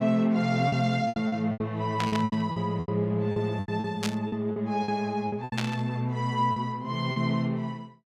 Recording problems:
packet loss; 12% of the sound replaced, filled with repeated pitch periods
burst of static; at 2 s, at 4 s and at 5.5 s; peak +1 dB vs average level

